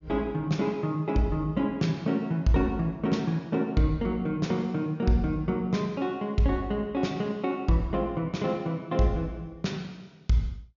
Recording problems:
treble cut off; nothing above 7.1 kHz

